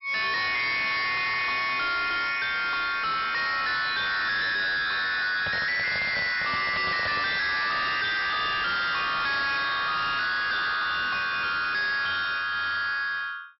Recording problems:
low-pass filter; nothing above 5.5 kHz
distorted audio; soft clipping, signal-to-distortion ratio 5 dB
microphone handling noise; from 5.5 to 7.5 s; peak -1 dB vs average level

